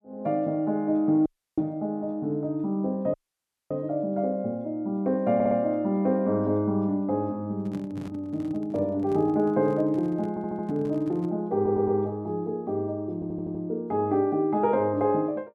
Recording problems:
audio cutting out; at 1.5 s and at 3 s for 0.5 s
stutter; 4 times, first at 5.5 s
handling noise; from 7.5 to 11 s; peak -9 dB vs average level

